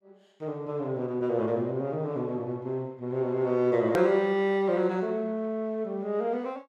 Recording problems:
click at an edit; at 4 s

